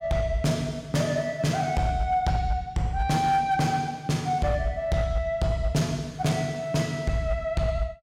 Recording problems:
distorted audio; hard clipping, signal-to-distortion ratio 12 dB

